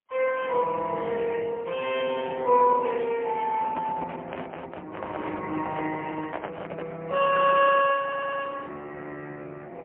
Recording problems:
telephone audio; 280 Hz to 3.1 kHz, AMR-NB, then MP3
handling noise; from 3.5 to 7 s; peak -3 dB vs average level
audio stuttering; at 8 s

